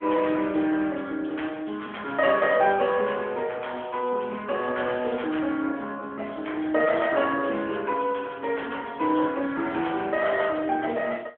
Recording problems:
phone line; 240 Hz to 3.3 kHz, AMR-NB

